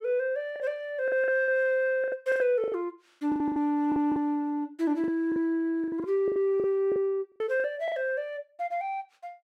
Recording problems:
lost packets; 13% of the sound replaced, filled with the last packet

